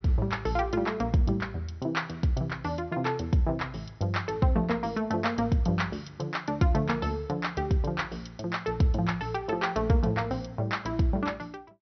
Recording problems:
treble missing; nothing above 5.9 kHz

